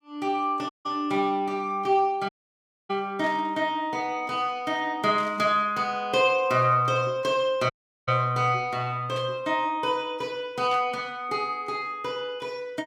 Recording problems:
dropout; at 0.5 s, at 2.5 s for 0.5 s and at 7.5 s
burst of static; 4 times, first at 3 s; peak -12 dB vs average level

